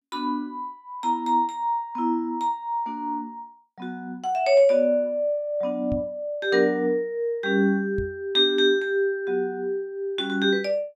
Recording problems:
knock on the microphone; at 6 s and at 8 s; peak -4 dB vs average level

